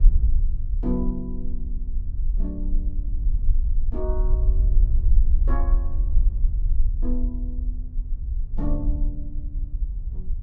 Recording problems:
rumble; below 48 Hz, SNR -8 dB

